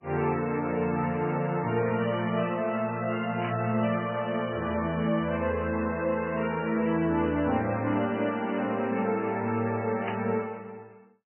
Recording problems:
codec artefacts; MP3, log-spectral distance 4 dB, nothing above 3 kHz
static burst; at 3.5 s and at 10 s; peak -4 dB vs average level

